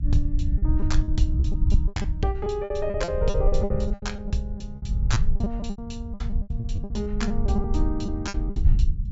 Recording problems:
treble cut off; nothing above 8 kHz
low-frequency rumble; below 68 Hz, SNR -3 dB
lost packets; 17% of the sound replaced, filled with repeated pitch periods

